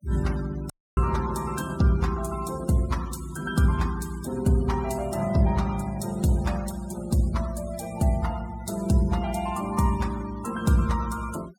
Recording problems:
denoising artefacts; signal-to-artefact ratio 17 dB
audio cutting out; at 0.5 s

